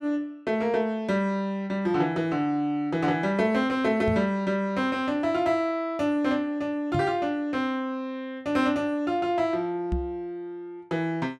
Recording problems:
microphone thump; at 4 s, at 7 s and at 10 s; peak +1 dB vs average level

